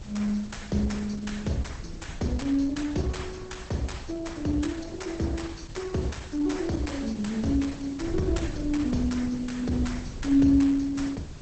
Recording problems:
lossy codec; Opus, log-spectral distance 5 dB, nothing above 8 kHz
hiss; slope -3 dB per octave, SNR 22 dB
wind on the microphone; below 120 Hz, SNR 14 dB

